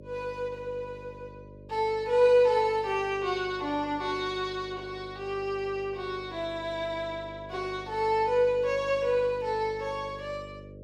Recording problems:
hum; 50 Hz, harmonics up to 600 Hz, SNR 18 dB

